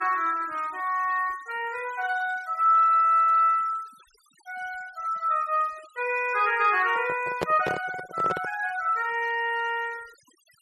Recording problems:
denoising artefacts; signal-to-artefact ratio 24 dB
microphone handling noise; from 7 to 8.5 s; peak +1 dB vs average level

